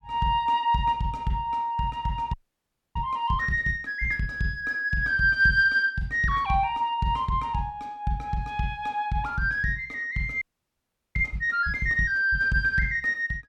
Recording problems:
audio freezing; at 2.5 s for 0.5 s and at 10 s for 0.5 s

